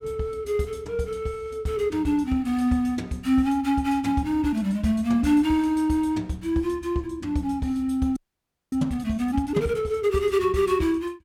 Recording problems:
frozen audio; at 8 s for 0.5 s

